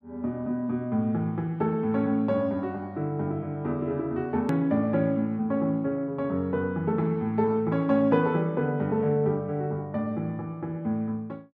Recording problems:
edit click; at 4.5 s

